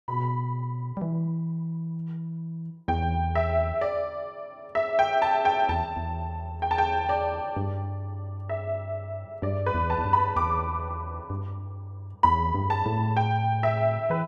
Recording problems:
none

